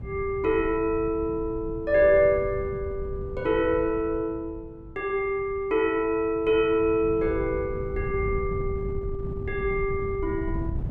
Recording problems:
wind on the microphone; below 130 Hz, SNR 11 dB

